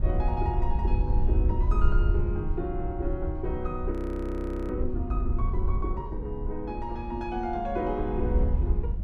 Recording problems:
wind on the microphone; below 70 Hz, SNR -3 dB
audio freezing; at 4 s for 1 s

